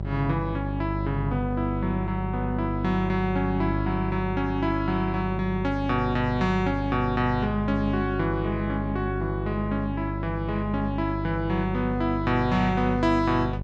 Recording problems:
hum; 50 Hz, harmonics up to 800 Hz, SNR 4 dB

